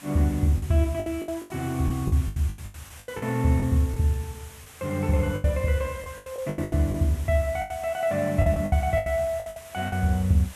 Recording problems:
hiss; SNR 19 dB
lost packets; 15% of the sound replaced, filled with the last packet

